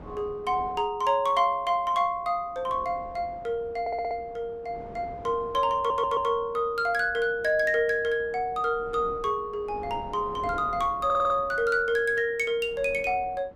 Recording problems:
wind on the microphone; below 570 Hz, SNR 20 dB
stutter; at 4 s, at 6 s and at 11 s

